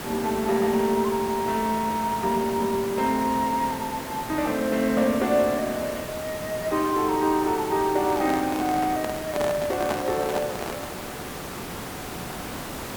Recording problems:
hiss; slope -5 dB per octave, SNR 9 dB
handling noise; from 8 to 11 s; peak -1 dB vs average level

